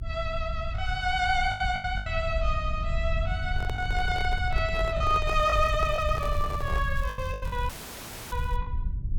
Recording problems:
low-frequency rumble; below 78 Hz, SNR 4 dB
packet loss; 7% of the sound replaced, filled with the last packet
handling noise; from 3.5 to 7 s; peak -4 dB vs average level
crackle; from 5.5 to 8.5 s; loose cable, SNR 23 dB
dropout; at 7.5 s for 0.5 s; filled with static

